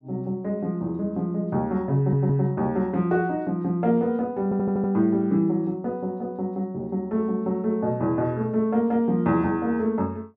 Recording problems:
stutter; at 2 s and at 4.5 s

